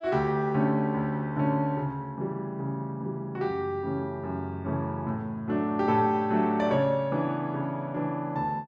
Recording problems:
none

